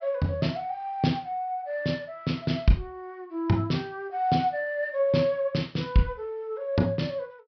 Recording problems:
treble missing; nothing above 5.5 kHz

